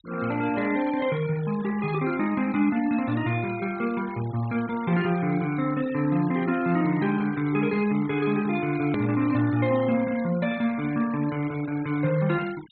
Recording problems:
treble missing; nothing above 4.2 kHz
noise reduction artefacts; signal-to-artefact ratio 19 dB
hard cut with a click; at 9 s

